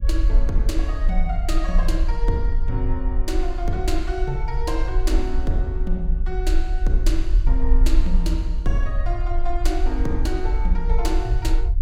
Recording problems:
rumble; below 44 Hz, SNR -4 dB

